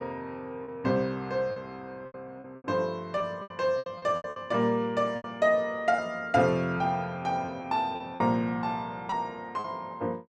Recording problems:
lost packets; 9% of the sound replaced, filled with repeated pitch periods

